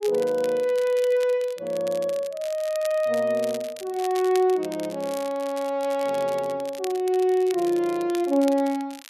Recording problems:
crackle; vinyl, SNR 18 dB

